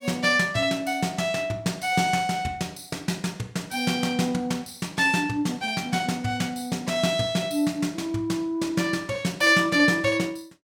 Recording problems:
none

